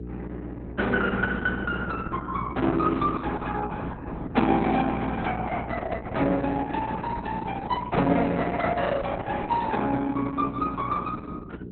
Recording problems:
lossy compression; Opus, log-spectral distance 4 dB, nothing above 4 kHz
electrical hum; 60 Hz, harmonics up to 540 Hz, SNR 10 dB

